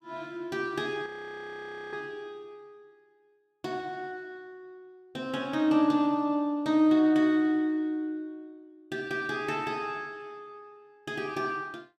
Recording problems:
frozen audio; at 1 s for 1 s

